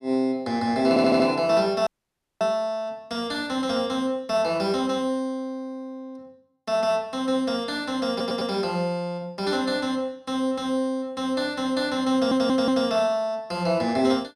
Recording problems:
stutter; at 1 s, at 8 s and at 12 s
dropout; at 2 s for 0.5 s

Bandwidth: 13.5 kHz